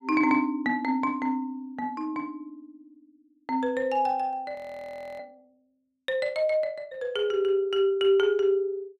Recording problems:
frozen audio; at 4.5 s for 0.5 s

